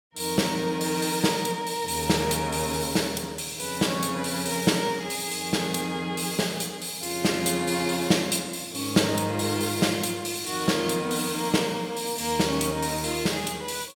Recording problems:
none

